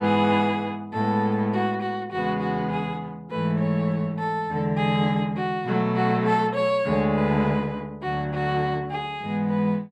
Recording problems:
none

